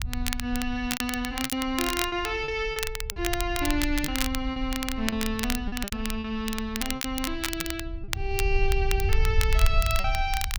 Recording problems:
low-frequency rumble; below 62 Hz, SNR 3 dB
crackling; vinyl, SNR 4 dB
packet loss; 8% of the sound replaced, filled with repeated pitch periods

